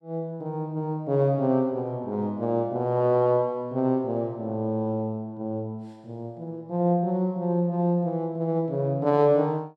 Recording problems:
none

